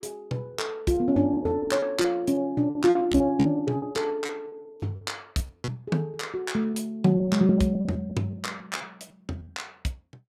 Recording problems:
lost packets; 15% of the sound replaced, filled with repeated pitch periods

